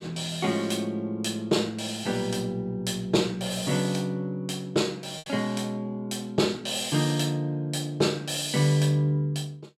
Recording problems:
packet loss; 0.8% of the sound replaced, filled with repeated pitch periods

